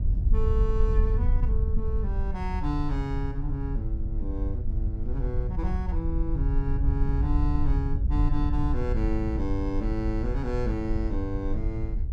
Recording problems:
wind noise; below 70 Hz, SNR -4 dB

